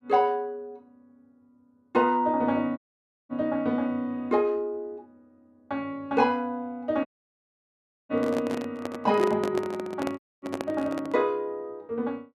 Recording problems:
audio cutting out; at 3 s for 0.5 s, at 7 s for 1 s and at 10 s
handling noise; from 8 to 11 s; peak 0 dB vs average level

